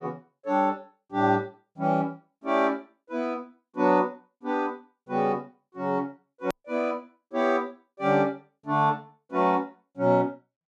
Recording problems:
hard cut with a click; at 6.5 s

